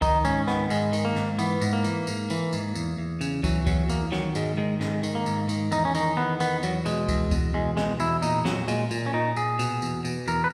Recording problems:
none

